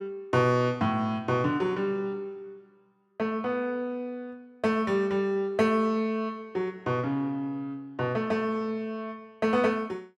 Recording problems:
none

